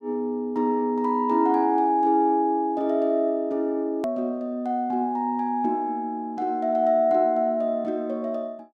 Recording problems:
click at an edit; at 4 s

